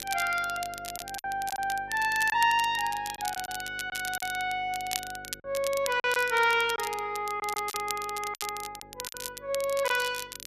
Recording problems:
hum; 50 Hz, harmonics up to 550 Hz, SNR 23 dB
crackle; vinyl, SNR 10 dB
packet loss; 6% of the sound replaced, filled with silence

